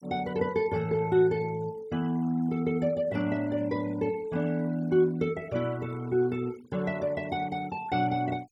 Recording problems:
denoising artefacts; signal-to-artefact ratio 22 dB

